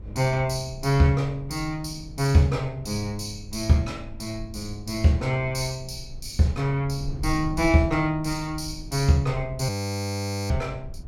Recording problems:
wind noise; below 86 Hz, SNR 15 dB
audio freezing; at 9.5 s for 1 s

